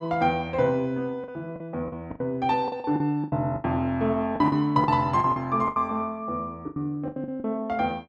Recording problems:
lost packets; 12% of the sound replaced, filled with the last packet

